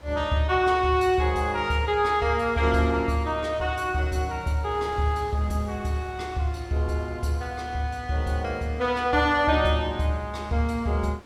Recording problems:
wind noise; below 1.6 kHz, SNR 23 dB

